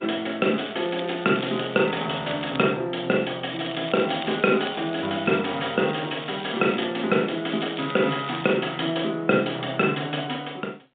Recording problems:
telephone audio; 130 Hz to 3.8 kHz, G.711
crackle; from 0.5 to 2.5 s, from 3.5 to 7 s and from 7.5 to 8.5 s; loose cable, SNR 15 dB

